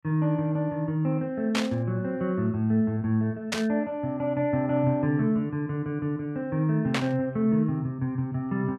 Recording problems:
static burst; at 1.5 s, at 3.5 s and at 7 s; peak +2 dB vs average level

